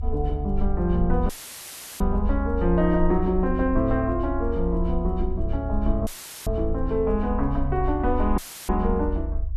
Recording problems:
rumble; below 72 Hz, SNR 4 dB
audio cutting out; at 1.5 s for 0.5 s, at 6 s and at 8.5 s; filled with static

